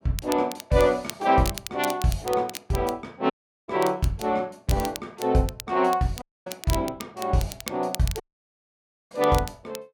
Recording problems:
crackle; vinyl, SNR 13 dB
dropout; at 3.5 s, at 6 s and at 8 s for 1 s

